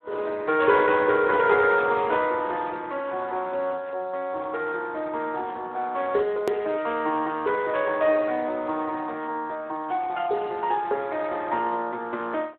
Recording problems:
phone line; 320 Hz to 2.8 kHz, Speex
click at an edit; at 6.5 s

